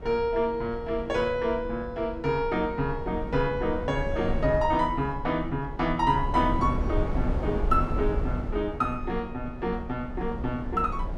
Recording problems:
low-frequency rumble; below 150 Hz, SNR 6 dB

